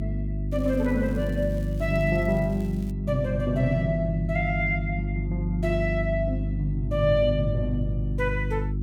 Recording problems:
hum; 50 Hz, harmonics up to 350 Hz, SNR 3 dB
crackling; from 0.5 to 3 s; loose cable, SNR 26 dB

